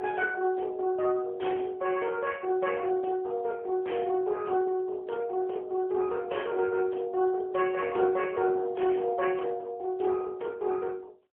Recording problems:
phone line; 300 Hz to 3.3 kHz, AMR-NB, then MP3

